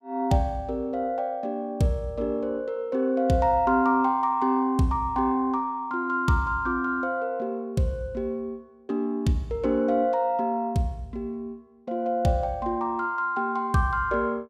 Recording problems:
none

